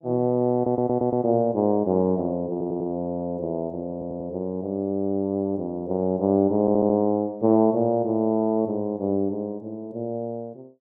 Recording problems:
stutter; 4 times, first at 0.5 s

